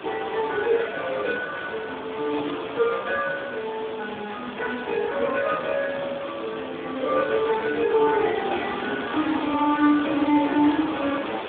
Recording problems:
telephone audio; 190 Hz to 3.1 kHz, Speex
hiss; SNR 10 dB
static burst; at 9 s; peak -14 dB vs average level

